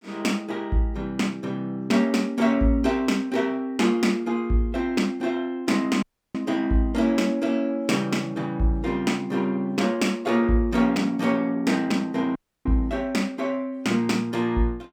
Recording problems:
dropout; at 6 s and at 12 s

